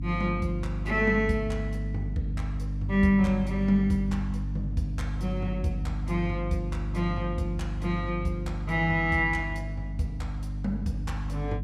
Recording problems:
hum; 50 Hz, harmonics up to 300 Hz, SNR 4 dB

